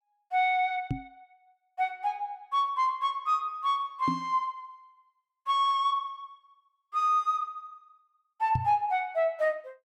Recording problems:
microphone thump; at 1 s, at 4 s and at 8.5 s; peak +2 dB vs average level

